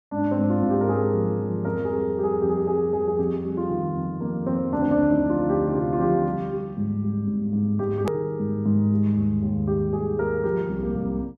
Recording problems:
hard cut with a click; at 8 s

